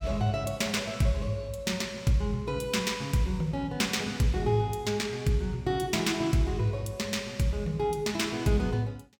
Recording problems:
none

